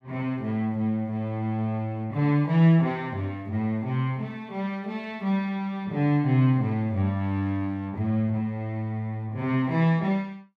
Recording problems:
none

